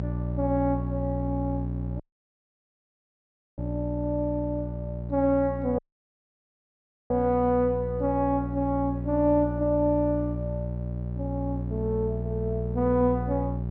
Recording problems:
electrical hum; 60 Hz, harmonics up to 600 Hz, SNR 5 dB
dropout; at 2 s for 1.5 s and at 6 s for 1.5 s

